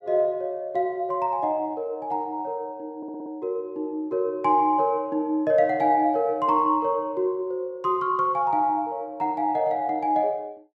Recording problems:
stutter; at 3 s

